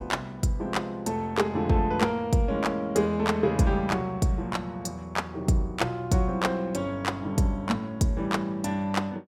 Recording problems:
none

